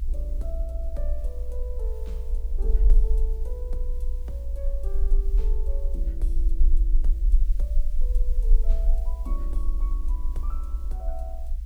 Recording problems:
hiss; SNR 17 dB
low-frequency rumble; below 42 Hz, SNR -15 dB

